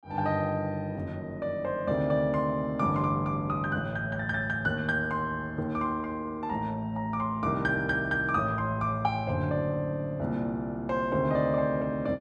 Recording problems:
none

